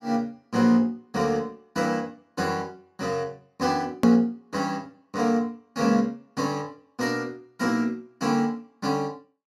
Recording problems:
edit click; at 4 s

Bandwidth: 16 kHz